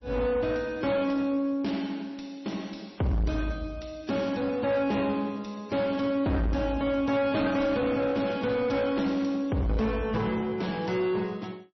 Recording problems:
lossy compression; MP3, log-spectral distance 4 dB, nothing above 5.8 kHz
distorted audio; soft clipping, signal-to-distortion ratio 10 dB

